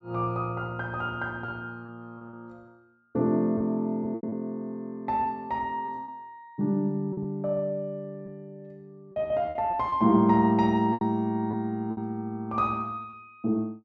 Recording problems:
lost packets; 6% of the sound replaced, filled with repeated pitch periods

